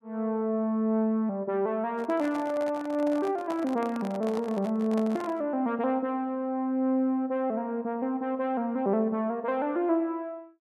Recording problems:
microphone handling noise; from 2 to 5.5 s; peak -7 dB vs average level

